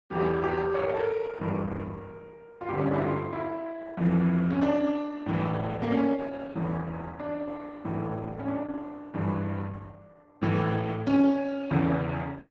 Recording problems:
codec artefacts; Opus, log-spectral distance 3 dB

